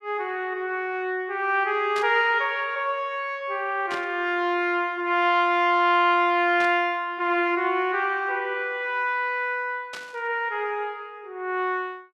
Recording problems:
burst of static; 4 times, first at 2 s; peak -7 dB vs average level

